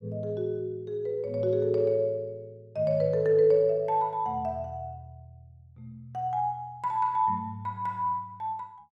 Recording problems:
none

